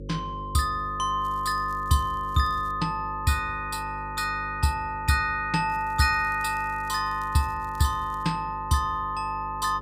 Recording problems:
electrical hum; 50 Hz, harmonics up to 550 Hz, SNR 15 dB
crackle; from 1 to 2.5 s and from 5.5 to 8.5 s; loose cable, SNR 28 dB

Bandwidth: 15.5 kHz